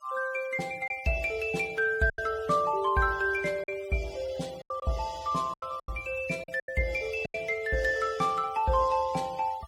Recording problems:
denoising artefacts; signal-to-artefact ratio 21 dB
lost packets; 6% of the sound replaced, filled with silence

